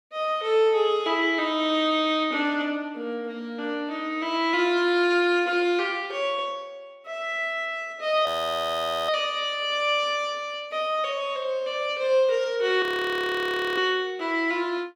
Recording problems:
frozen audio; at 8.5 s for 1 s and at 13 s for 1 s

